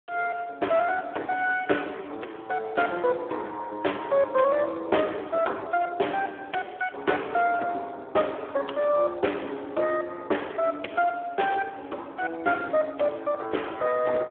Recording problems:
telephone audio; 280 Hz to 3.3 kHz, Speex

